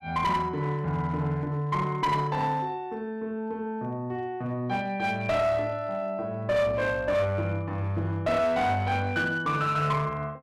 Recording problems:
distortion; hard clipping, uneven, signal-to-distortion ratio 10 dB

